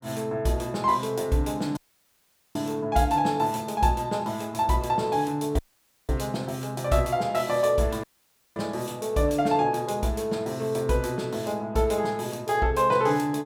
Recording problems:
audio cutting out; at 2 s for 1 s, at 5.5 s for 0.5 s and at 8 s for 0.5 s

